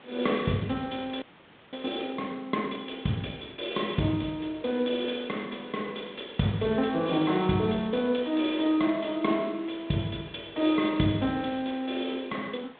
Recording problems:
phone line; 110 Hz to 3.8 kHz, G.726
background hiss; SNR 23 dB
audio freezing; at 1 s for 0.5 s

